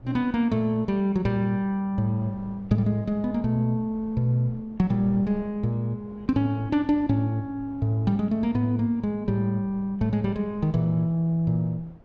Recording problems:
wind on the microphone; below 330 Hz, SNR 24 dB

